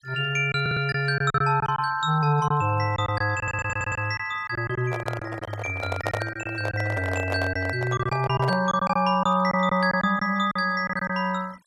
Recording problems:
noise reduction artefacts; signal-to-artefact ratio 23 dB
lost packets; 9% of the sound replaced, filled with silence
audio stuttering; at 0.5 s and at 3.5 s
handling noise; from 5 to 8.5 s; peak +1 dB vs average level

